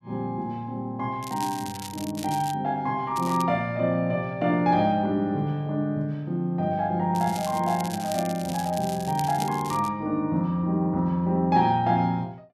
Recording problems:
crackling; from 1 to 2.5 s, at 3 s and from 7 to 10 s; loose cable, SNR 14 dB

